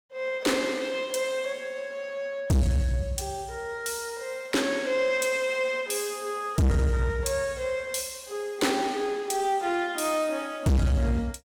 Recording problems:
distortion; soft clipping, signal-to-distortion ratio 6 dB

